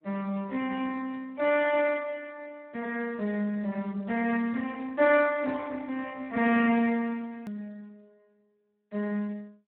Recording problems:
phone line; 280 Hz to 2.9 kHz, Speex
edit click; at 7.5 s

